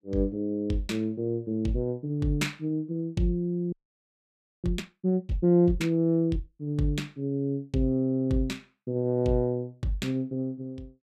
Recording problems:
frozen audio; at 3.5 s for 1 s

